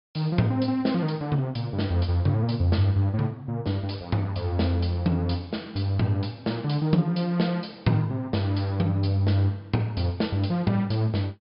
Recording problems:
treble cut off; nothing above 5.5 kHz

